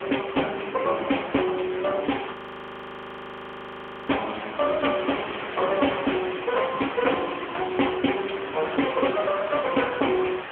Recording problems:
telephone audio; 280 Hz to 3.3 kHz, AMR-NB
background hiss; SNR 11 dB
crackle; from 2 to 8 s and at 8.5 s; loose cable, SNR 21 dB
audio freezing; at 2.5 s for 2 s

